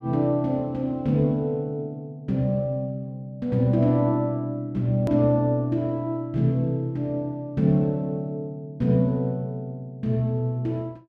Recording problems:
edit click; at 5 s

